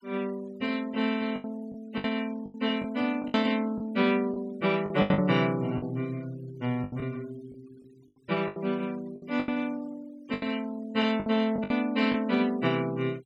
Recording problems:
denoising artefacts; signal-to-artefact ratio 25 dB
lost packets; 9% of the sound replaced, filled with the last packet

